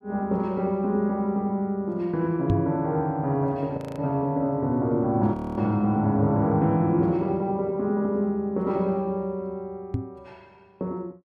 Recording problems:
microphone bump; at 2.5 s and at 10 s; peak +3 dB vs average level
audio freezing; at 4 s and at 5.5 s

